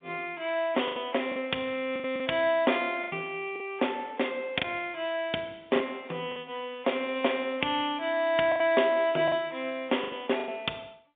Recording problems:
telephone audio; 220 Hz to 3.6 kHz, G.711
lost packets; 7% of the sound replaced, filled with the last packet

